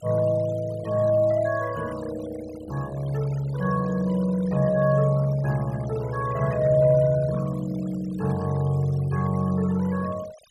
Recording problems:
denoising artefacts; signal-to-artefact ratio 20 dB

